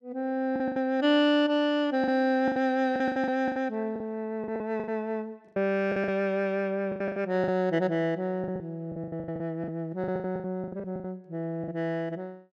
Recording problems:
lost packets; 15% of the sound replaced, filled with the last packet

